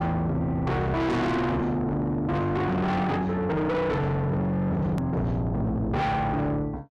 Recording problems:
distorted audio; soft clipping, signal-to-distortion ratio 6 dB
hard cut with a click; at 5 s

